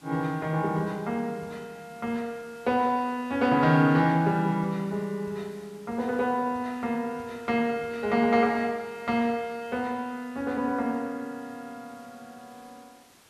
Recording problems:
hiss; slope -2 dB per octave, SNR 27 dB

